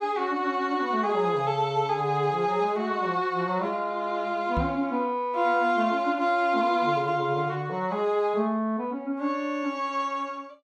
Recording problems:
microphone bump; at 4.5 s; peak 0 dB vs average level

